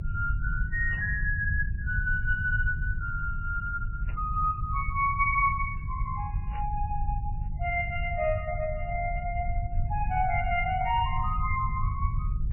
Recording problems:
lossy compression; Vorbis, then MP3, log-spectral distance 2 dB
electrical hum; 50 Hz, harmonics up to 350 Hz, SNR 12 dB
rumble; below 86 Hz, SNR 4 dB
static burst; at 1 s, at 4 s and at 6.5 s; peak -13 dB vs average level

